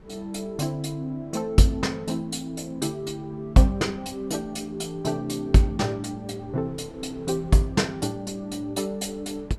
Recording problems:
wind noise; below 350 Hz, SNR 23 dB

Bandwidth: 13 kHz